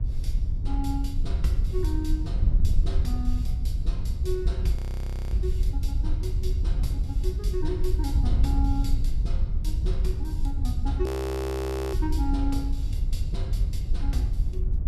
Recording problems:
wind noise; below 68 Hz, SNR -6 dB
audio freezing; at 5 s for 0.5 s and at 11 s for 1 s

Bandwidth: 14.5 kHz